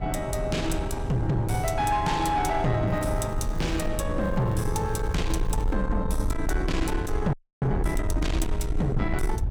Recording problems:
distorted audio; soft clipping, signal-to-distortion ratio 11 dB
low-frequency rumble; below 70 Hz, SNR 5 dB
wind on the microphone; below 200 Hz, SNR 12 dB
crackling; from 3 to 4 s and from 4 to 5.5 s; loose cable, SNR 26 dB
audio freezing; at 7.5 s

